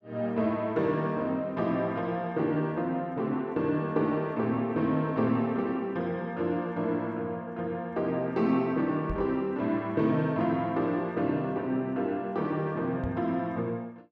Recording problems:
microphone bump; at 9 s and at 13 s; peak -2 dB vs average level

